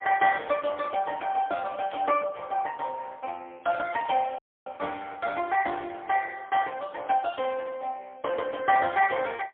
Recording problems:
phone line; 300 Hz to 3.1 kHz, AMR-NB, then MP3
burst of static; at 2 s, at 4 s and at 7.5 s; peak -12 dB vs average level
audio cutting out; at 4.5 s

